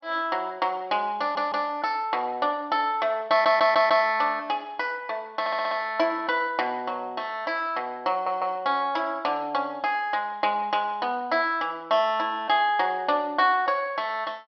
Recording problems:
treble cut off; nothing above 5.5 kHz
audio stuttering; 4 times, first at 1 s

